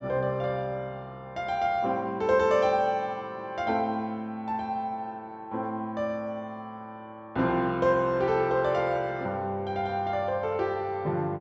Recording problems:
low-pass filter; nothing above 8 kHz

